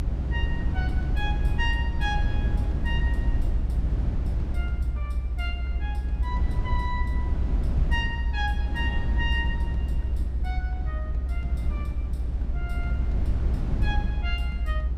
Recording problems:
rumble; below 74 Hz, SNR -7 dB

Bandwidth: 15.5 kHz